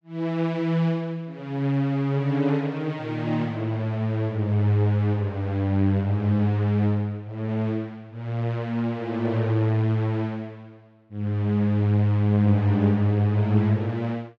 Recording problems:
none

